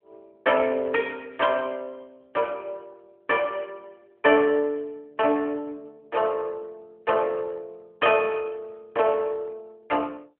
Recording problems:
phone line; 240 Hz to 3.3 kHz, AMR-NB

